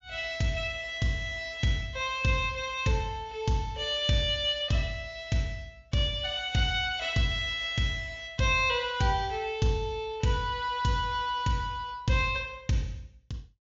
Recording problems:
low-pass filter; nothing above 7.3 kHz

